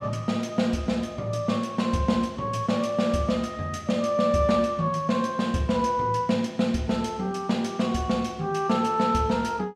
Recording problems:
none

